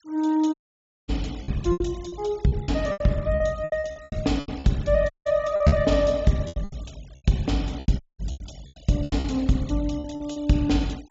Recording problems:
treble cut off; nothing above 8 kHz
noise reduction artefacts; signal-to-artefact ratio 24 dB
lost packets; 14% of the sound replaced, filled with repeated pitch periods
audio cutting out; at 0.5 s for 0.5 s, at 5 s and at 8 s

